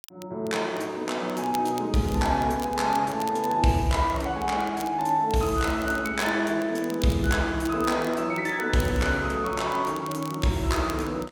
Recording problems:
crackling; vinyl, SNR 20 dB

